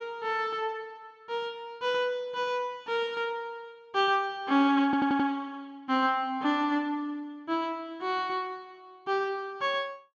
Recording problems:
stutter; at 5 s

